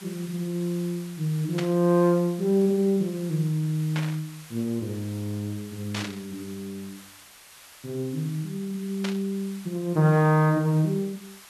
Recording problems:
hiss; SNR 20 dB
static burst; 4 times, first at 1.5 s; peak -3 dB vs average level

